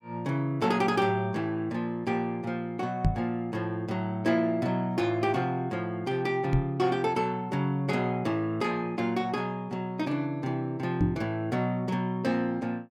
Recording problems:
microphone bump; at 3 s, at 6.5 s and at 11 s; peak +7 dB vs average level

